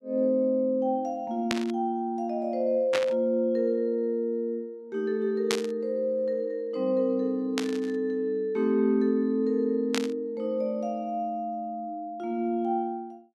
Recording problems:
burst of static; 5 times, first at 1.5 s; peak +3 dB vs average level

